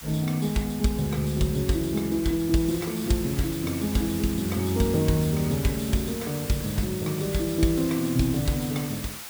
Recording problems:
hiss; slope +1 dB per octave, SNR 10 dB

